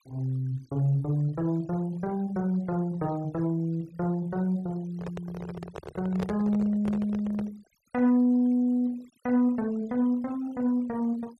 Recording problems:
noise reduction artefacts; signal-to-artefact ratio 26 dB
microphone handling noise; from 5 to 7.5 s; peak -2 dB vs average level

